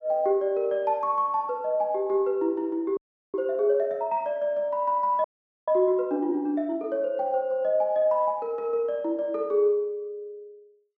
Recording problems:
frozen audio; at 3 s and at 5 s

